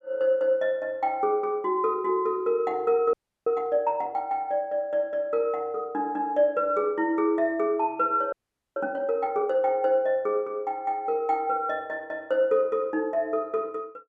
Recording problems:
audio freezing; at 3 s and at 8.5 s

